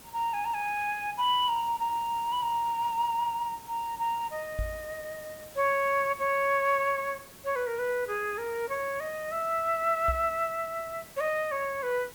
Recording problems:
background hiss; slope -3 dB per octave, SNR 18 dB
knock on the microphone; at 4.5 s and at 10 s; peak -1 dB vs average level

